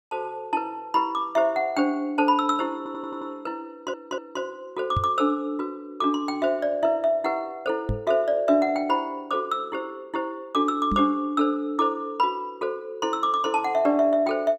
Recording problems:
audio stuttering; at 3 s and at 3.5 s
microphone thump; at 5 s, at 8 s and at 11 s; peak +2 dB vs average level

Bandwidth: 14.5 kHz